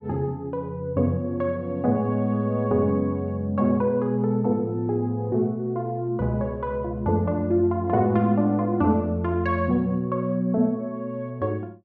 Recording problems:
none

